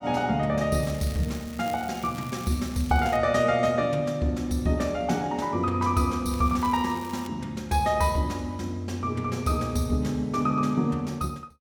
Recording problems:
crackling; from 1 to 3 s and at 6.5 s; loose cable, SNR 19 dB

